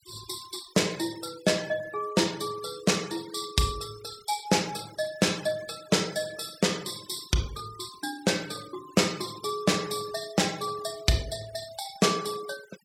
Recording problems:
noise reduction artefacts; signal-to-artefact ratio 17 dB

